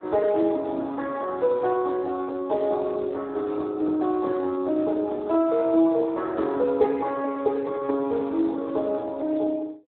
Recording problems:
telephone audio; 280 Hz to 2.1 kHz, Speex

